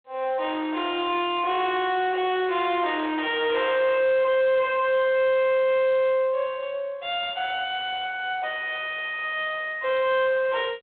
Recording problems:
telephone audio; 320 Hz to 3.6 kHz, G.726
distorted audio; soft clipping, signal-to-distortion ratio 7 dB

